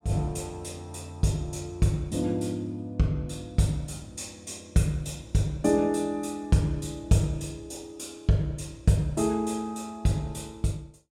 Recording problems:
none

